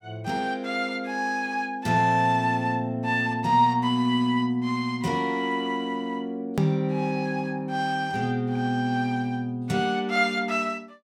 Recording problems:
hard cut with a click; at 6.5 s

